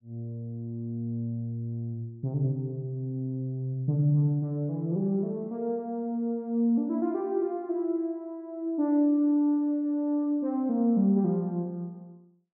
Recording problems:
none

